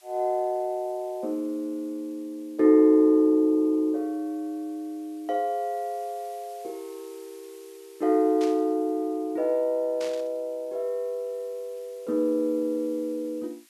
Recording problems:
hiss; SNR 29 dB
burst of static; at 8.5 s and at 10 s; peak -10 dB vs average level

